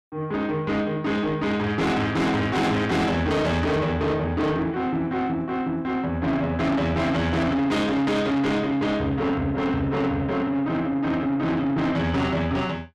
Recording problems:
distorted audio; soft clipping, signal-to-distortion ratio 7 dB

